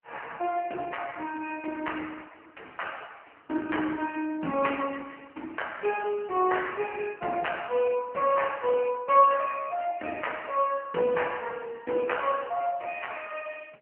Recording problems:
phone line; 240 Hz to 3.1 kHz, AMR-NB

